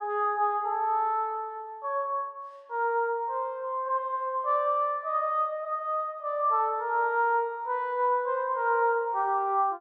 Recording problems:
none

